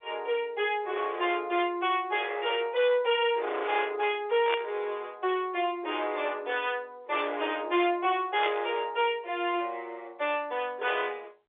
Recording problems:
phone line; 300 Hz to 3.7 kHz, G.711
distorted audio; soft clipping, signal-to-distortion ratio 11 dB
burst of static; at 4.5 s and at 8.5 s; peak +1 dB vs average level

